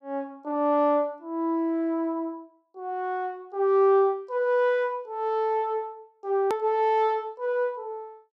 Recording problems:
hard cut with a click; at 6.5 s

